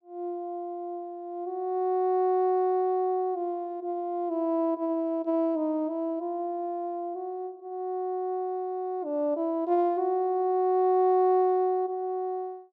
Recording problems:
none

